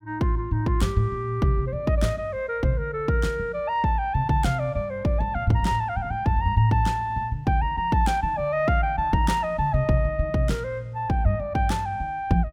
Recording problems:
none

